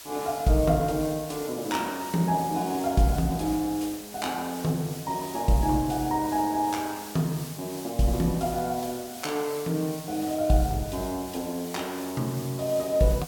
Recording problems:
background hiss; slope 0 dB per octave, SNR 13 dB

